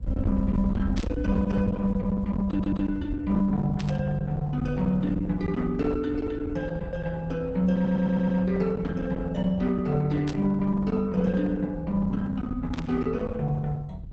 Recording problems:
codec artefacts; Opus, log-spectral distance 2 dB
distortion; hard clipping, uneven, signal-to-distortion ratio 12 dB
rumble; below 220 Hz, SNR 8 dB
burst of static; 4 times, first at 1 s; peak -8 dB vs average level
audio stuttering; at 2.5 s and at 8 s

